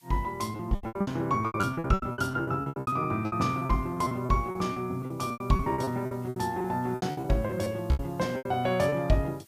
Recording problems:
hiss; slope +2 dB per octave, SNR 29 dB
packet loss; 22% of the sound replaced, filled with repeated pitch periods

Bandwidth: 15 kHz